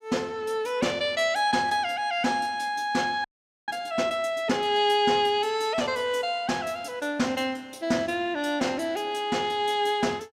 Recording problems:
audio freezing; at 3 s

